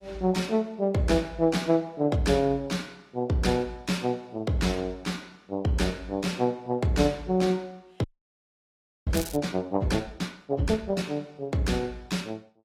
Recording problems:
lossy compression; AAC, log-spectral distance 3 dB
audio freezing; at 8 s for 1 s
crackling; at 9 s; loose cable, SNR 12 dB

